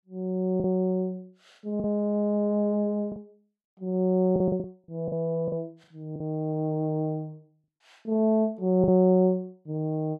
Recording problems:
packet loss; 5% of the sound replaced, filled with the last packet

